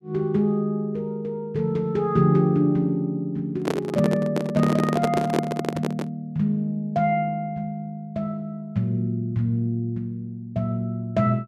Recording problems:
microphone handling noise; from 3.5 to 6 s; peak +4 dB vs average level

